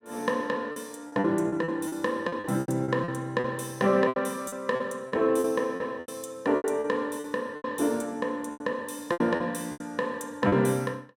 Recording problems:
packet loss; 13% of the sound replaced, filled with repeated pitch periods

